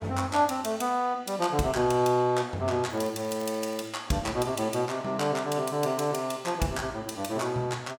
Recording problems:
crackling; from 3 to 4 s; loose cable, SNR 23 dB

